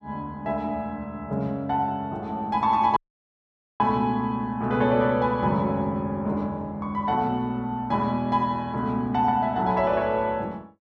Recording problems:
dropout; at 3 s for 1 s

